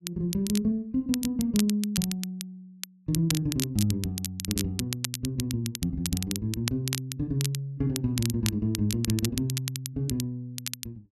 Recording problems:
crackling; vinyl, SNR 6 dB

